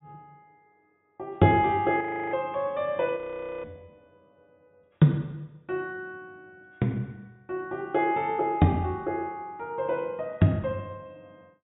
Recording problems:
treble missing; nothing above 4 kHz
frozen audio; at 2 s and at 3 s

